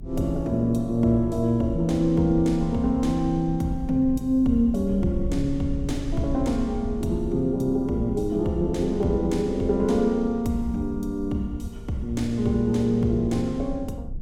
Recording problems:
low-frequency rumble; below 82 Hz, strongest tone 20 Hz, SNR 14 dB

